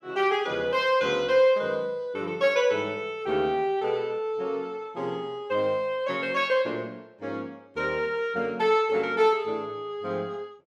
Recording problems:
none

